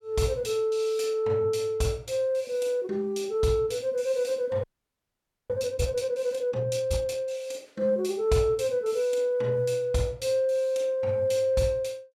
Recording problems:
audio freezing; at 4.5 s for 1 s

